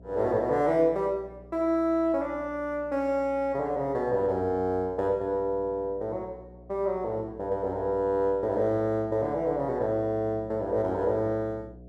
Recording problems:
mains hum; 60 Hz, harmonics up to 720 Hz, SNR 21 dB

